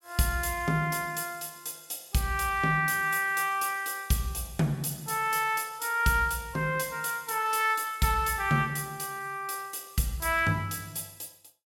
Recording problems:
none

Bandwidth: 17 kHz